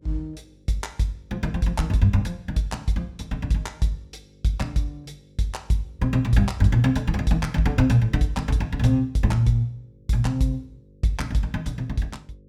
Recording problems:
hum; 50 Hz, harmonics up to 550 Hz, SNR 30 dB

